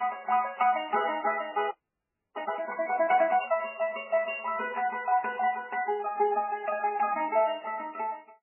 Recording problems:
codec artefacts; MP3, then MP3, log-spectral distance 5 dB, nothing above 2.8 kHz
audio freezing; at 1.5 s for 0.5 s

